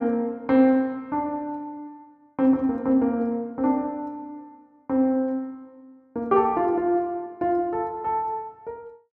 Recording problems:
none

